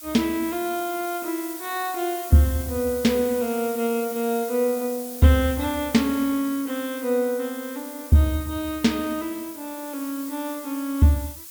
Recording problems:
background hiss; slope +3 dB per octave, SNR 12 dB

